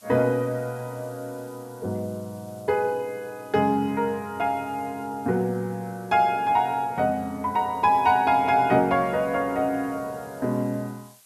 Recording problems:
background hiss; slope +2 dB per octave, SNR 27 dB

